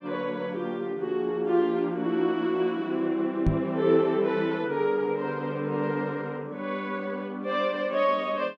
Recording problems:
microphone bump; at 3.5 s; peak +6 dB vs average level

